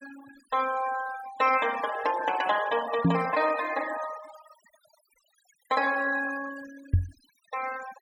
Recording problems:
denoising artefacts; signal-to-artefact ratio 14 dB
microphone thump; at 3 s and at 7 s; peak +8 dB vs average level

